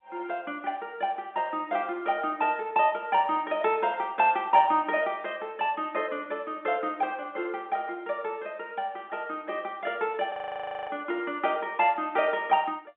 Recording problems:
telephone audio; 220 Hz to 3.5 kHz, G.711
frozen audio; at 10 s for 0.5 s

